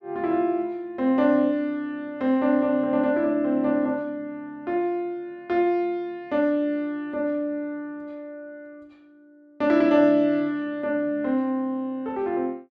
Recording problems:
none

